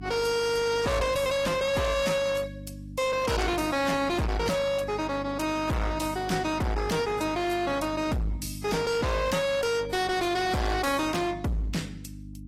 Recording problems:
lossy compression; AAC, log-spectral distance 3 dB
distorted audio; hard clipping, uneven, signal-to-distortion ratio 5 dB
hum; 50 Hz, harmonics up to 1.4 kHz, SNR 14 dB

